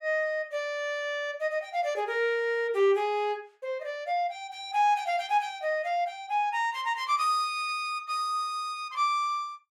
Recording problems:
none

